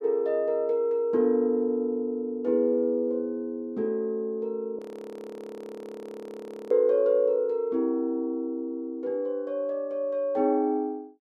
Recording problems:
audio freezing; at 5 s for 2 s

